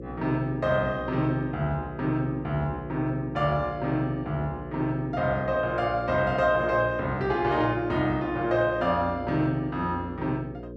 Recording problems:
hum; 60 Hz, harmonics up to 540 Hz, SNR 12 dB

